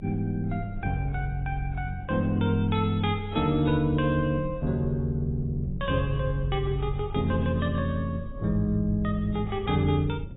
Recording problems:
lossy compression; AAC, log-spectral distance 2 dB, nothing above 3.8 kHz
rumble; below 88 Hz, strongest tone 30 Hz, SNR 14 dB

